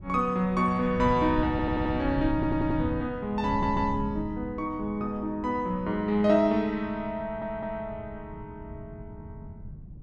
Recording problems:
wind noise; below 160 Hz, SNR 11 dB
audio stuttering; 4 times, first at 1.5 s

